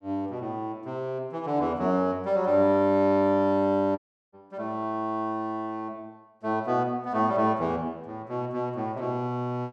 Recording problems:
audio cutting out; at 4 s

